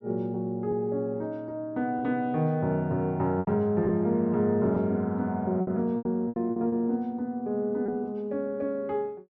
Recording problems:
treble missing; nothing above 8 kHz
lost packets; 5% of the sound replaced, filled with repeated pitch periods

